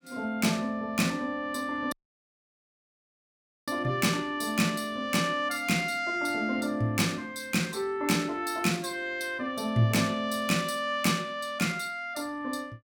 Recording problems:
audio cutting out; at 2 s for 2 s

